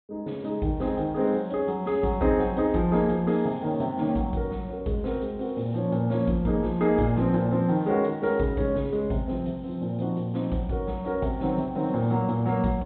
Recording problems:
treble cut off; nothing above 4 kHz

